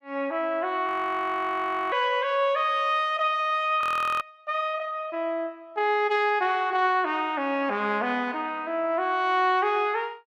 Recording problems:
frozen audio; at 1 s for 1 s and at 4 s

